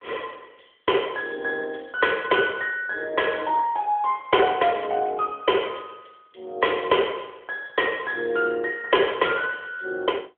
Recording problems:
telephone audio; 300 Hz to 3.3 kHz, AMR-NB

